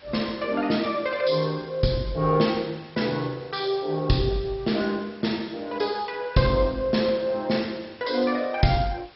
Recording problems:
codec artefacts; MP2, log-spectral distance 6 dB, nothing above 5.5 kHz
background hiss; slope -2 dB per octave, SNR 25 dB

